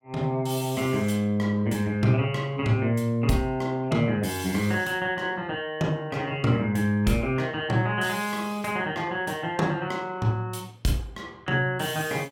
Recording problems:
none

